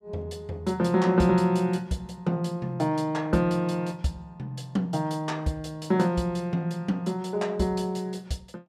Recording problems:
none

